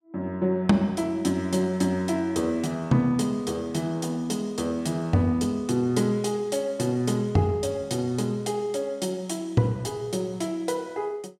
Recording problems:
none

